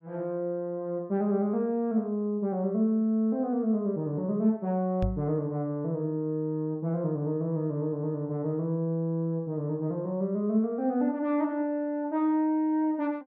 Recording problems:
microphone thump; at 5 s; peak +2 dB vs average level

